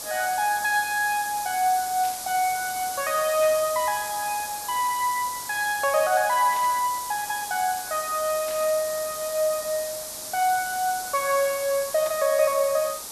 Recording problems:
hiss; SNR 8 dB
static burst; 5 times, first at 2 s; peak -12 dB vs average level

